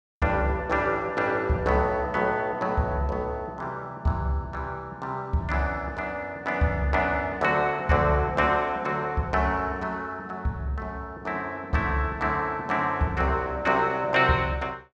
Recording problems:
none

